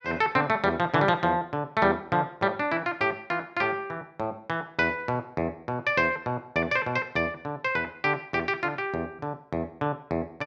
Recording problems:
none

